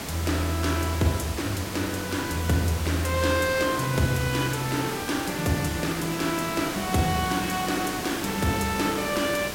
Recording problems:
background hiss; slope -3 dB per octave, SNR 6 dB
wind noise; below 1.1 kHz, SNR 24 dB

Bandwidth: 16.5 kHz